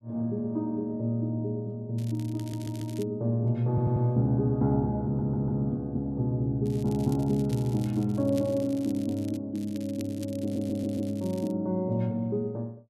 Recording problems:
crackling; from 2 to 3 s, from 6.5 to 9.5 s and from 9.5 to 12 s; loose cable, SNR 22 dB
audio stuttering; 4 times, first at 2.5 s

